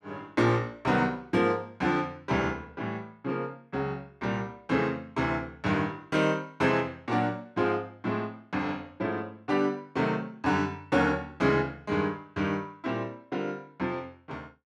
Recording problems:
none

